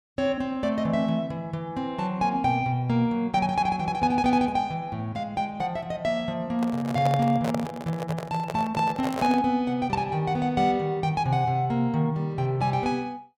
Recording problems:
handling noise; from 6.5 to 9.5 s; peak 0 dB vs average level

